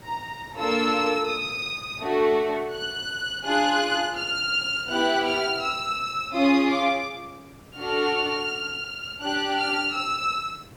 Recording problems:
background hiss; slope -5 dB per octave, SNR 24 dB

